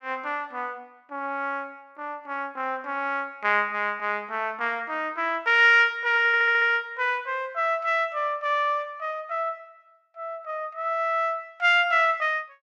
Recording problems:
stutter; at 6.5 s

